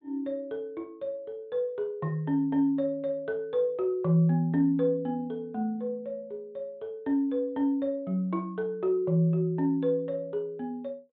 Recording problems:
treble cut off; nothing above 4 kHz

